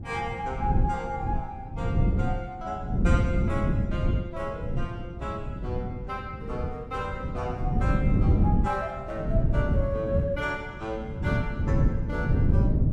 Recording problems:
wind noise; below 170 Hz, SNR -5 dB

